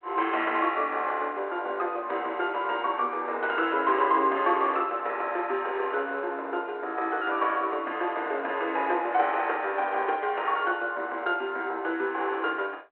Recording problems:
telephone audio; 300 Hz to 3.1 kHz, G.726

